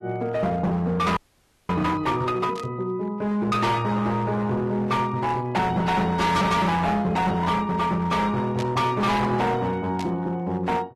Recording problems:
lossy compression; AAC, log-spectral distance 2 dB, nothing above 13.1 kHz
distortion; hard clipping, uneven, signal-to-distortion ratio 7 dB
frozen audio; at 1 s for 0.5 s
static burst; at 2.5 s, at 8.5 s and at 10 s; peak -9 dB vs average level

